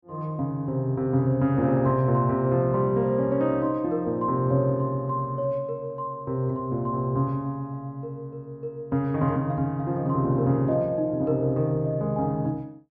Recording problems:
none

